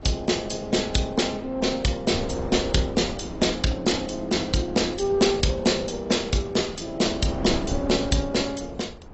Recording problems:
lossy codec; AAC, log-spectral distance 5 dB, nothing above 7.8 kHz
wind on the microphone; below 400 Hz, SNR 13 dB

